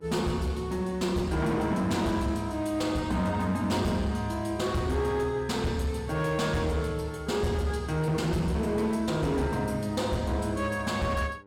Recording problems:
distortion; hard clipping, signal-to-distortion ratio 12 dB
hum; 50 Hz, harmonics up to 1.5 kHz, SNR 28 dB

